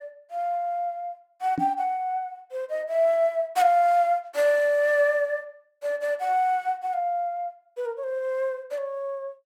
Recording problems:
knock on the microphone; at 1.5 s; peak 0 dB vs average level

